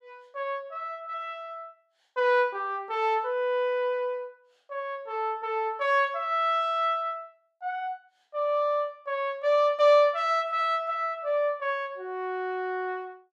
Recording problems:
none

